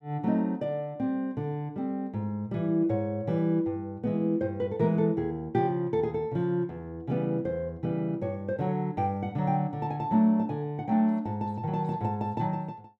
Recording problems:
none

